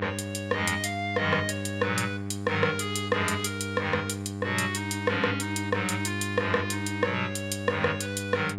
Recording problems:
mains hum; 50 Hz, harmonics up to 1.5 kHz, SNR 6 dB

